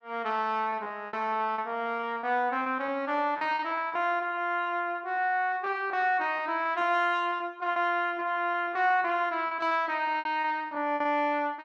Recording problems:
packet loss; 13% of the sound replaced, filled with repeated pitch periods

